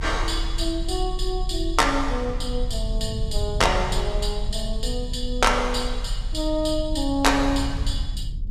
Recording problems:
rumble; below 56 Hz, strongest tone 36 Hz, SNR 5 dB

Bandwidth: 14 kHz